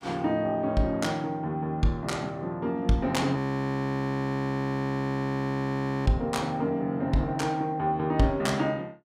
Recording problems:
audio freezing; at 3.5 s for 2.5 s

